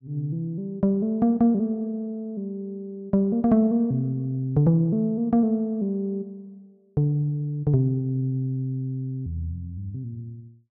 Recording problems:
none

